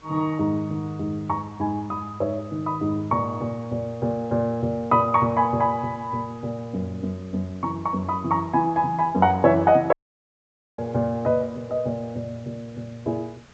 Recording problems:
low-pass filter; nothing above 8 kHz
background hiss; slope -3 dB per octave, SNR 27 dB
dropout; at 10 s for 1 s

